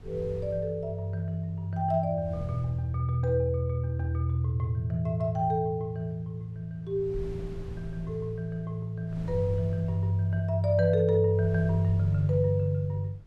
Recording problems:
wind noise; below 120 Hz, SNR 17 dB

